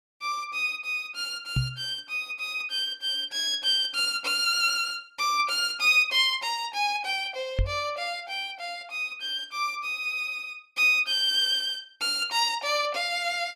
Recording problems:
knock on the microphone; at 1.5 s and at 7.5 s; peak +3 dB vs average level

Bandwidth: 15 kHz